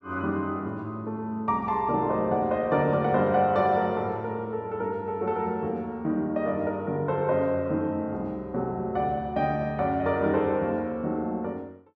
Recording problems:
none

